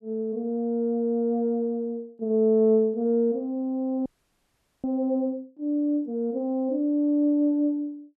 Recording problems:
frozen audio; at 4 s for 1 s

